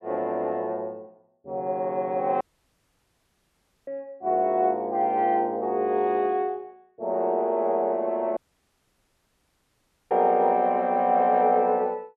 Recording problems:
dropout; at 2.5 s for 1.5 s and at 8.5 s for 1.5 s

